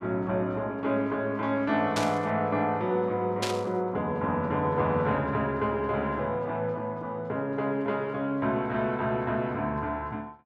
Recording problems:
burst of static; at 2 s and at 3.5 s; peak +2 dB vs average level

